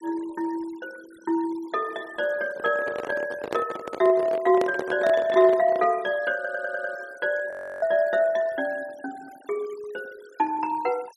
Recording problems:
noise reduction artefacts; signal-to-artefact ratio 24 dB
handling noise; from 2.5 to 6 s; peak 0 dB vs average level
stutter; at 6.5 s
audio freezing; at 7.5 s

